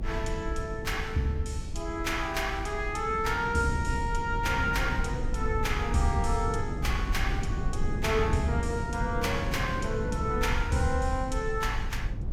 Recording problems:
low-frequency rumble; below 78 Hz, SNR 5 dB
wind noise; below 260 Hz, SNR 8 dB

